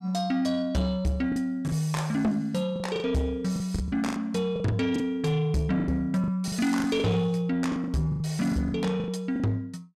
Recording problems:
distorted audio; soft clipping, signal-to-distortion ratio 11 dB
lost packets; 11% of the sound replaced, filled with the last packet

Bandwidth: 14.5 kHz